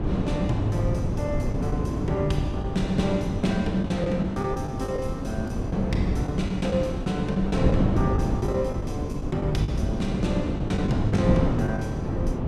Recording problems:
wind on the microphone; below 280 Hz, SNR 0 dB
lost packets; 7% of the sound replaced, filled with the last packet

